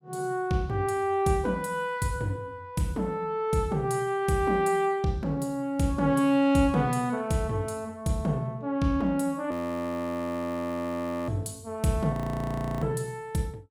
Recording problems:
frozen audio; at 9.5 s for 2 s and at 12 s for 0.5 s

